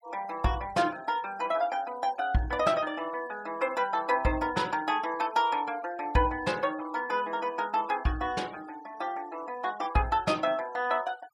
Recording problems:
noise reduction artefacts; signal-to-artefact ratio 22 dB

